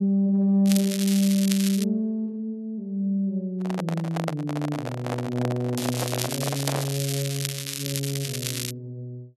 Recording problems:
crackle; from 0.5 to 2 s and from 6 to 8.5 s; loose cable, SNR 5 dB
handling noise; from 3.5 to 7 s; peak +1 dB vs average level

